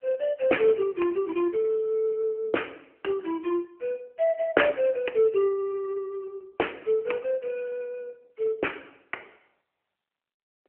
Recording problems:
phone line; 280 Hz to 3.1 kHz, AMR-NB

